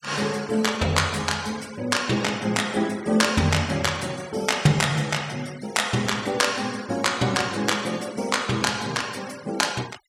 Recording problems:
noise reduction artefacts; signal-to-artefact ratio 18 dB

